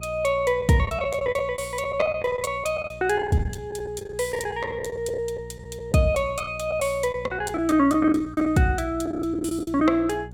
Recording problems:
hum; 60 Hz, harmonics up to 600 Hz, SNR 18 dB
lost packets; 12% of the sound replaced, filled with the last packet

